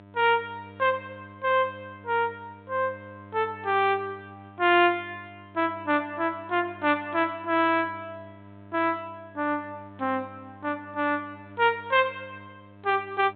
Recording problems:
low-pass filter; nothing above 4 kHz
hum; 50 Hz, harmonics up to 1.9 kHz, SNR 22 dB

